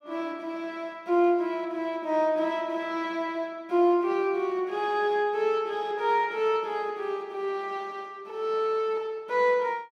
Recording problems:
none

